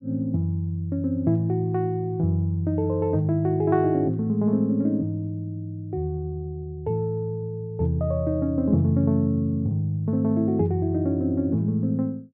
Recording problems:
none

